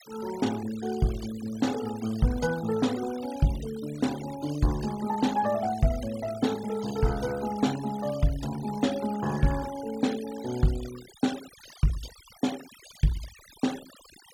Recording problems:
denoising artefacts; signal-to-artefact ratio 16 dB

